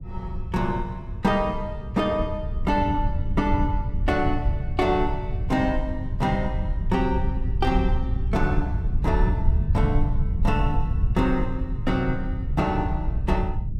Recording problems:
rumble; below 90 Hz, SNR 1 dB

